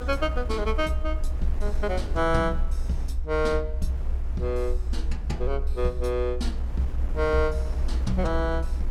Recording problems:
low-frequency rumble; below 62 Hz, strongest tone 24 Hz, SNR 2 dB
wind on the microphone; below 490 Hz, SNR 13 dB

